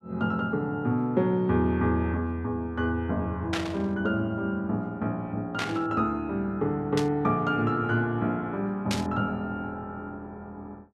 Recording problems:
burst of static; 4 times, first at 3.5 s; peak +1 dB vs average level

